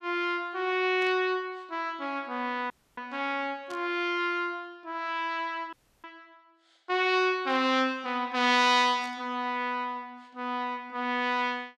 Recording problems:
static burst; 4 times, first at 1 s; peak -14 dB vs average level
dropout; at 2.5 s and at 5.5 s

